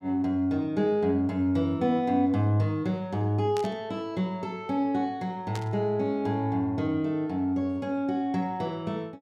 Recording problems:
burst of static; at 3.5 s and at 5.5 s; peak -7 dB vs average level

